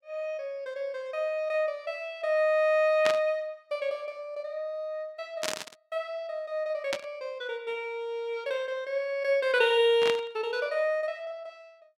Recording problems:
burst of static; 4 times, first at 3 s; peak +3 dB vs average level

